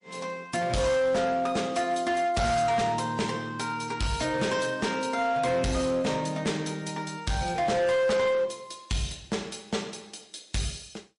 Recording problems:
lossy codec; MP3, log-spectral distance 4 dB, nothing above 10.4 kHz
distorted audio; hard clipping, signal-to-distortion ratio 10 dB

